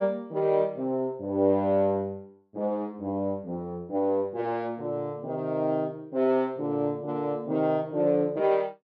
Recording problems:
none

